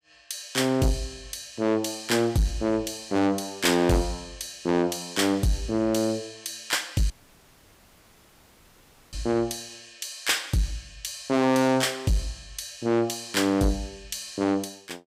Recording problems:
distortion; soft clipping, signal-to-distortion ratio 6 dB
audio cutting out; at 7 s for 2 s

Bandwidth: 15.5 kHz